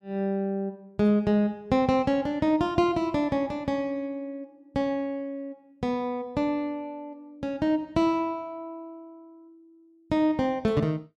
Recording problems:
none

